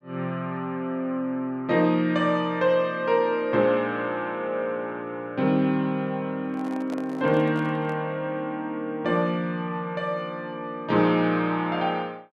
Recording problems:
microphone handling noise; from 6.5 to 8 s; peak -9 dB vs average level

